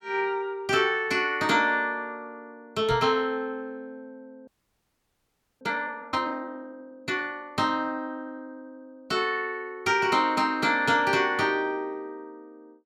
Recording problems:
microphone thump; at 3 s; peak -3 dB vs average level
frozen audio; at 4.5 s for 1 s

